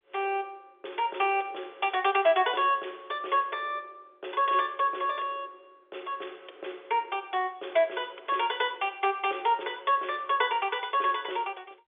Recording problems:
phone line; 320 Hz to 3.6 kHz, G.711

